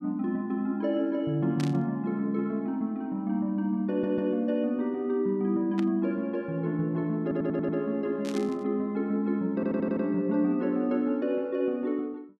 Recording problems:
static burst; at 1.5 s, at 6 s and at 8 s; peak -7 dB vs average level
stutter; at 4 s, at 7 s and at 9.5 s

